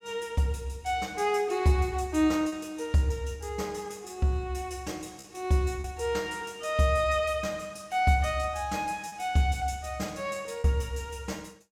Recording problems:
packet loss; 1.7% of the sound replaced, filled with repeated pitch periods

